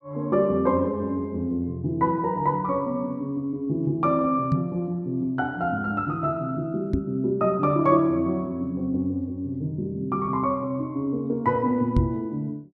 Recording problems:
microphone thump; at 4.5 s, at 7 s and at 12 s; peak +6 dB vs average level

